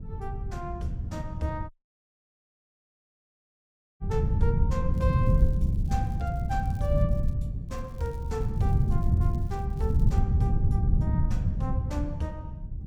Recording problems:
wind noise; below 130 Hz, SNR -8 dB
audio cutting out; at 1.5 s for 2.5 s
crackle; from 5 to 7.5 s and from 7.5 to 10 s; loose cable, SNR 24 dB

